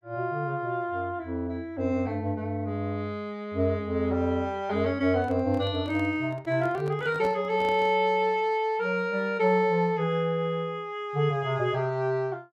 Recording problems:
handling noise; from 5 to 8 s; peak -8 dB vs average level

